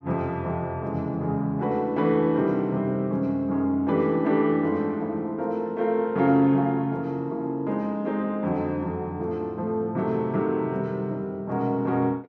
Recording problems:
none

